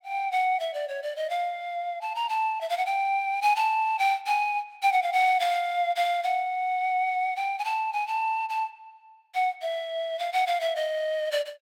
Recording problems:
none

